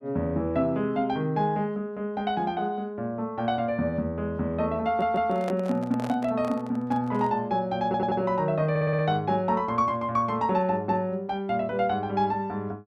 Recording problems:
audio stuttering; at 5 s, at 8 s and at 8.5 s
handling noise; from 5 to 7.5 s; peak -4 dB vs average level

